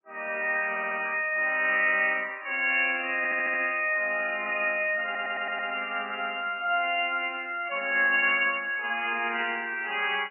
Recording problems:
codec artefacts; MP3, then AAC, log-spectral distance 3 dB, nothing above 2.4 kHz
stutter; at 0.5 s, at 3 s and at 5 s

